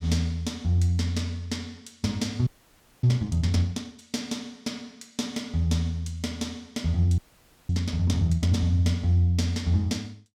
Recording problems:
frozen audio; at 2.5 s for 0.5 s and at 7 s for 0.5 s

